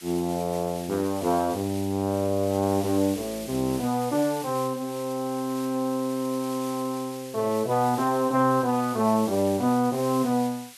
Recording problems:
hiss; SNR 15 dB

